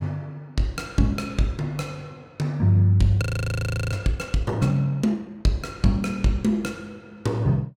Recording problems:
frozen audio; at 3 s for 0.5 s

